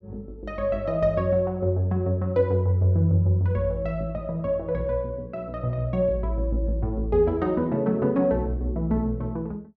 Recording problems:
none

